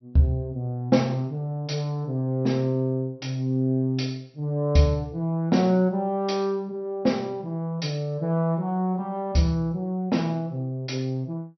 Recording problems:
low-pass filter; nothing above 5.9 kHz

